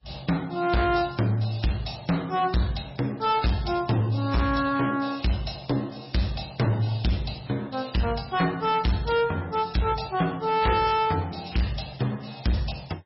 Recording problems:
lossy compression; MP3, log-spectral distance 7 dB, nothing above 5.5 kHz
distortion; hard clipping, signal-to-distortion ratio 7 dB

